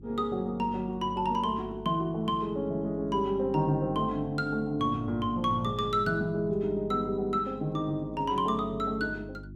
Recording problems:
hum; 50 Hz, harmonics up to 350 Hz, SNR 16 dB

